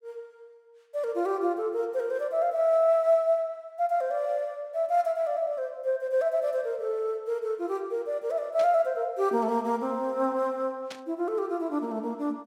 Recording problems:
burst of static; at 8.5 s and at 11 s; peak -8 dB vs average level

